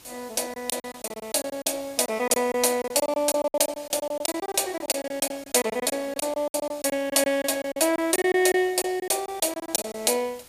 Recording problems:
hiss; slope -1 dB per octave, SNR 23 dB
lost packets; 16% of the sound replaced, filled with silence

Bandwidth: 15 kHz